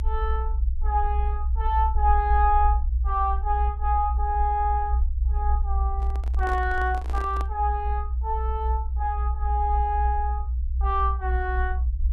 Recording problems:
low-frequency rumble; below 64 Hz, strongest tone 62 Hz, SNR 0 dB
handling noise; from 6 to 7.5 s; peak -7 dB vs average level

